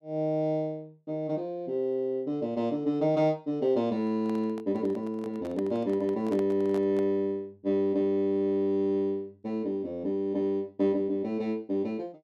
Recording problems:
handling noise; from 4 to 7 s; peak -9 dB vs average level

